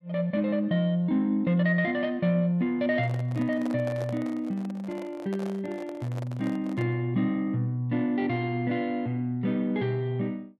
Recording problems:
handling noise; from 3 to 7 s; peak -7 dB vs average level

